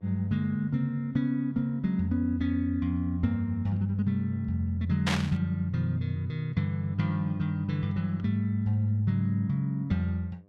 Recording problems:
hum; 50 Hz, harmonics up to 1.2 kHz, SNR 32 dB
static burst; at 5 s; peak +3 dB vs average level

